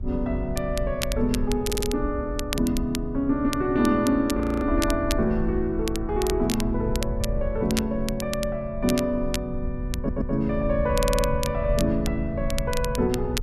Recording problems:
wind on the microphone; below 68 Hz, SNR 8 dB
crackle; vinyl, SNR 10 dB
audio stuttering; at 1.5 s, at 10 s and at 11 s
audio freezing; at 4.5 s

